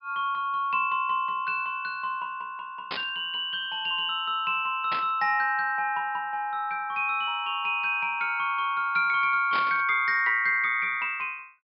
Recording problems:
treble cut off; nothing above 5.5 kHz
static burst; at 3 s, at 5 s and at 9.5 s; peak -3 dB vs average level

